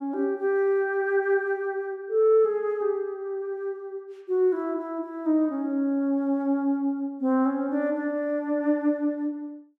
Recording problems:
none

